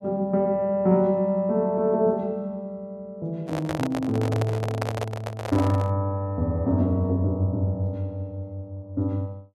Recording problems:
microphone handling noise; from 3.5 to 6 s; peak 0 dB vs average level

